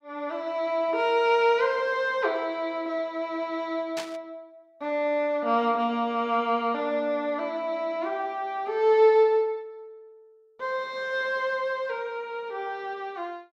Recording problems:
static burst; at 4 s; peak -5 dB vs average level

